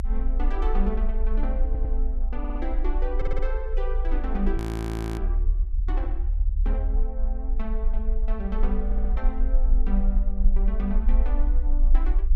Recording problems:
rumble; below 44 Hz, strongest tone 26 Hz, SNR -8 dB
stutter; 4 times, first at 1.5 s
audio freezing; at 4.5 s for 0.5 s

